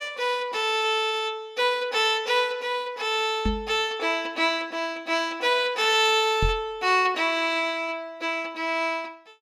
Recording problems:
microphone thump; at 3.5 s and at 6.5 s; peak +1 dB vs average level

